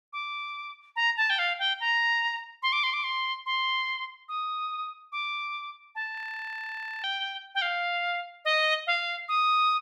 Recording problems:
audio freezing; at 6 s for 1 s

